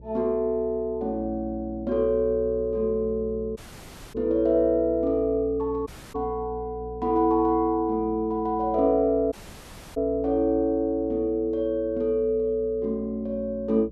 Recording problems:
electrical hum; 60 Hz, harmonics up to 600 Hz, SNR 18 dB
dropout; at 3.5 s for 0.5 s, at 6 s and at 9.5 s for 0.5 s

